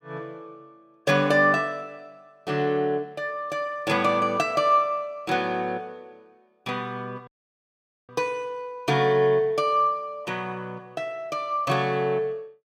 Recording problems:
audio cutting out; at 7.5 s for 1 s

